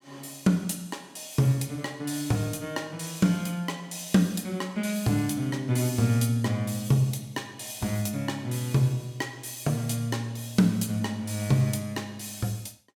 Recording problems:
none

